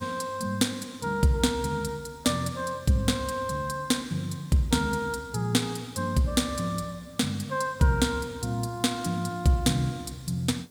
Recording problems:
hiss; SNR 29 dB

